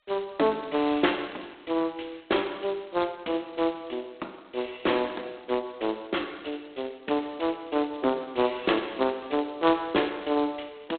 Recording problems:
telephone audio; 260 Hz to 3.6 kHz, G.726

